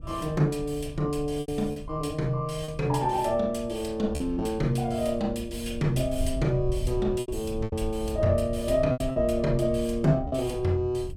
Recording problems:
wind on the microphone; below 86 Hz, SNR 11 dB
packet loss; 5% of the sound replaced, filled with repeated pitch periods

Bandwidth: 16.5 kHz